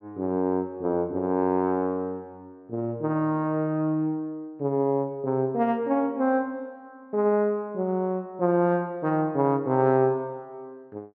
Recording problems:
low-pass filter; nothing above 8 kHz

